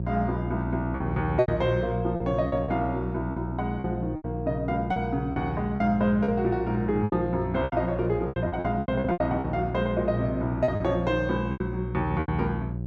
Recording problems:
hum; 60 Hz, harmonics up to 540 Hz, SNR 5 dB
packet loss; 11% of the sound replaced, filled with repeated pitch periods

